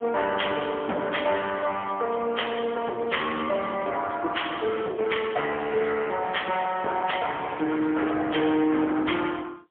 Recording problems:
phone line; 260 Hz to 3.4 kHz, AMR-NB, then MP3
distortion; soft clipping, signal-to-distortion ratio 12 dB

